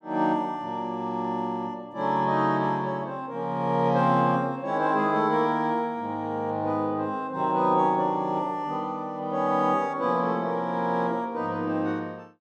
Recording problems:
none

